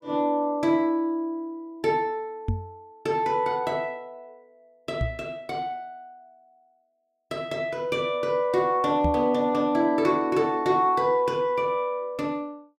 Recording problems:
microphone thump; at 2.5 s, at 5 s and at 9 s; peak +1 dB vs average level

